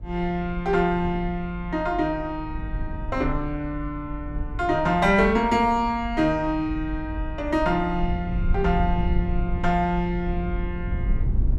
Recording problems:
rumble; below 78 Hz, SNR 7 dB

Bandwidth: 13.5 kHz